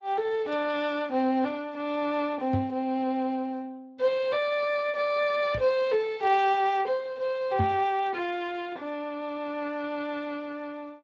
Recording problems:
lossy codec; Opus, then Speex, log-spectral distance 2 dB
knock on the microphone; at 2.5 s, at 5.5 s and at 7.5 s; peak +4 dB vs average level

